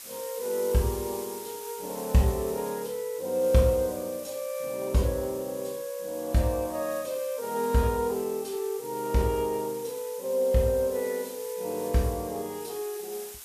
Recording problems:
hiss; slope +1 dB per octave, SNR 13 dB

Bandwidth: 14.5 kHz